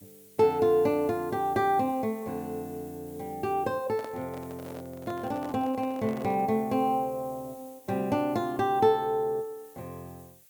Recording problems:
hiss; slope +1 dB per octave, SNR 24 dB
handling noise; from 4 to 6.5 s; peak -9 dB vs average level

